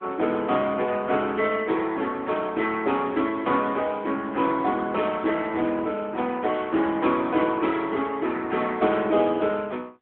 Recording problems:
telephone audio; 220 Hz to 3.4 kHz, AMR-NB
static burst; 4 times, first at 2 s; peak -17 dB vs average level

